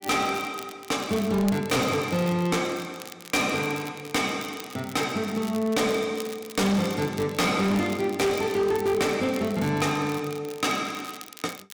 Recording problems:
distorted audio; hard clipping, signal-to-distortion ratio 8 dB
crackle; vinyl, SNR 17 dB

